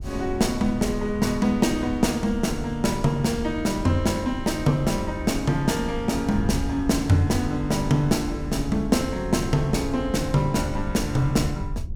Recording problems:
wind noise; below 94 Hz, SNR 11 dB

